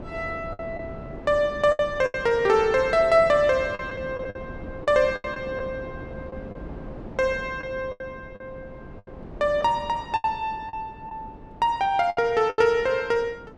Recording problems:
wind noise; below 460 Hz, SNR 16 dB
packet loss; 8% of the sound replaced, filled with the last packet

